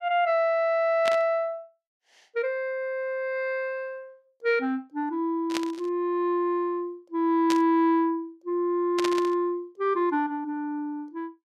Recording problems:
burst of static; 4 times, first at 1 s; peak 0 dB vs average level

